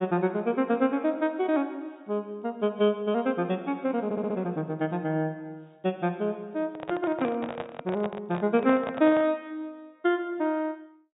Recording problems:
treble cut off; nothing above 4 kHz
audio stuttering; at 4 s
microphone handling noise; from 6.5 to 9.5 s; peak -2 dB vs average level

